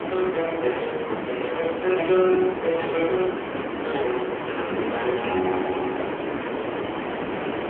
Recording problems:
phone line; 240 Hz to 3.3 kHz, AMR-NB
background hiss; SNR 4 dB
wind on the microphone; below 490 Hz, SNR 20 dB

